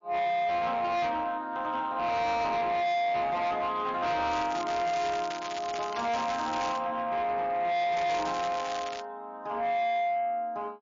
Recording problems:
lossy compression; MP3, log-spectral distance 3 dB, nothing above 6.3 kHz
distortion; soft clipping, signal-to-distortion ratio 8 dB
crackling; from 4.5 to 7 s and from 8 to 9 s; loose cable, SNR 11 dB

